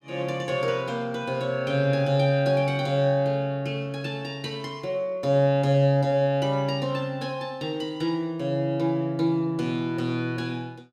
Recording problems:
none

